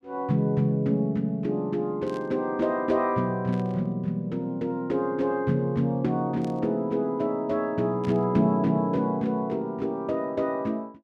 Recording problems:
burst of static; 4 times, first at 2 s; peak -15 dB vs average level

